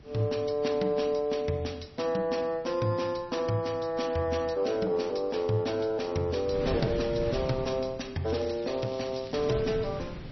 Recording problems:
codec artefacts; MP3, log-spectral distance 5 dB, nothing above 5.8 kHz
wind noise; below 320 Hz, SNR 9 dB
crackling; from 8.5 to 9.5 s; loose cable, SNR 21 dB

